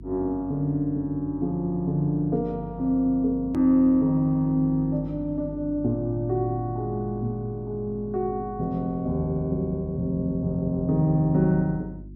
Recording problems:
hum; 50 Hz, harmonics up to 350 Hz, SNR 17 dB
hard cut with a click; at 3.5 s

